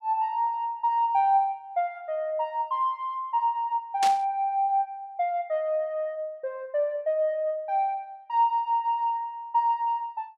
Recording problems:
burst of static; at 4 s; peak 0 dB vs average level

